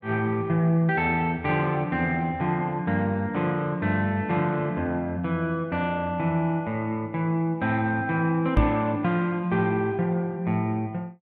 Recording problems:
knock on the microphone; at 8.5 s; peak +6 dB vs average level

